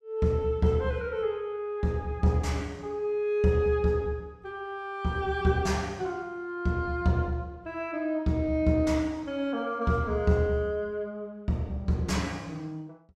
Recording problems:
none

